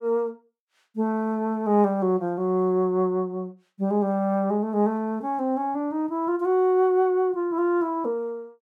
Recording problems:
none

